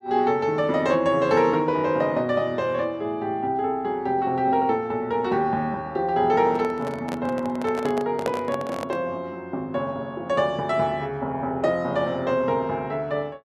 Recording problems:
microphone handling noise; from 6.5 to 9 s; peak 0 dB vs average level

